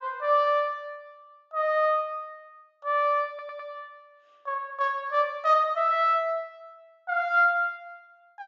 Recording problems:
treble cut off; nothing above 8 kHz
stutter; at 3.5 s

